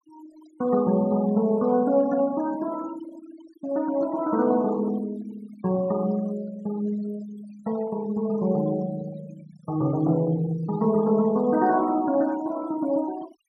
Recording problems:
denoising artefacts; signal-to-artefact ratio 21 dB

